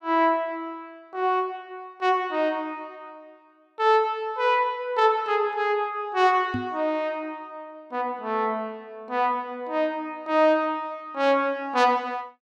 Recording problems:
microphone thump; at 6.5 s; peak -1 dB vs average level

